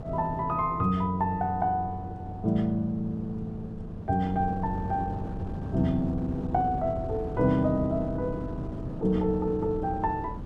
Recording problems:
wind noise; below 270 Hz, SNR 10 dB

